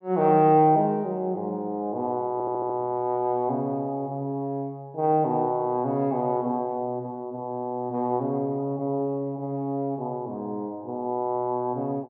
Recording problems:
treble cut off; nothing above 5.5 kHz
audio stuttering; at 2.5 s

